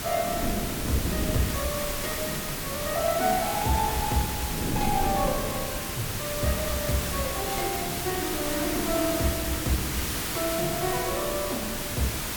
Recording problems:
hiss; slope -1 dB per octave, SNR 1 dB
wind on the microphone; below 310 Hz, SNR 6 dB

